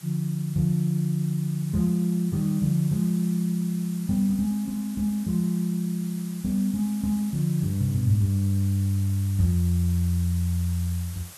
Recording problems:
hiss; slope 0 dB per octave, SNR 19 dB

